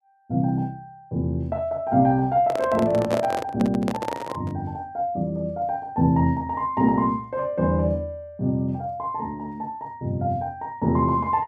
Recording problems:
handling noise; from 2.5 to 4.5 s; peak +1 dB vs average level

